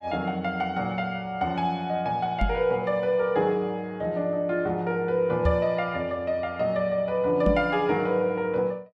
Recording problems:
microphone bump; at 2.5 s, at 5.5 s and at 7.5 s; peak +4 dB vs average level

